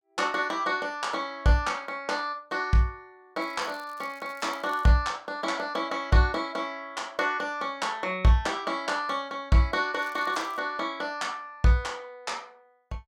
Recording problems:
crackling; from 3.5 to 5 s and at 10 s; loose cable, SNR 26 dB

